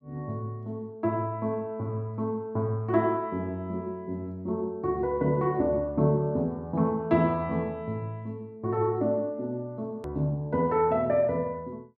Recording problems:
treble cut off; nothing above 8 kHz
hard cut with a click; at 10 s

